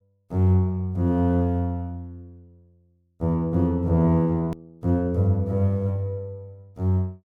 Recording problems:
edit click; at 4.5 s

